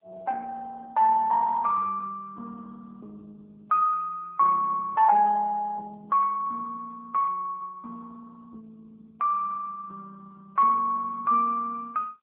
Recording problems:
phone line; 370 Hz to 2.2 kHz, AMR-NB

